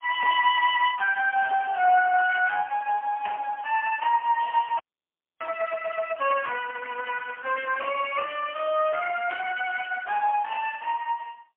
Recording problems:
phone line; 430 Hz to 2.7 kHz, AMR-NB, then MP3
frozen audio; at 5 s for 0.5 s
crackling; from 6.5 to 9.5 s; loose cable, SNR 27 dB

